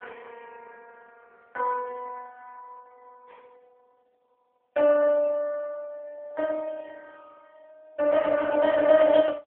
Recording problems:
phone line; 340 Hz to 2.8 kHz, AMR-NB

